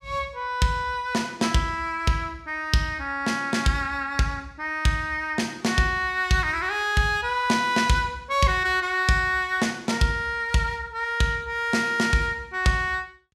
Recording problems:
none

